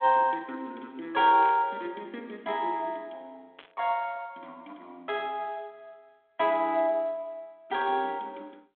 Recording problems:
phone line; 240 Hz to 3.7 kHz, G.726
burst of static; at 1.5 s and at 3.5 s; peak -13 dB vs average level

